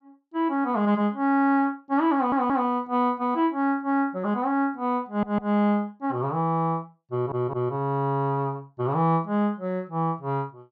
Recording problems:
audio stuttering; at 2 s, at 5 s and at 7 s

